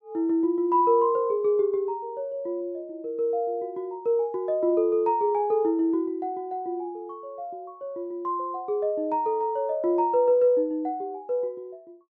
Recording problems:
none

